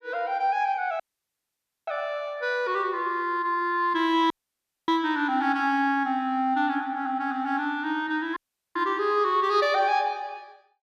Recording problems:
dropout; at 1 s for 1 s, at 4.5 s for 0.5 s and at 8.5 s

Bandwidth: 14.5 kHz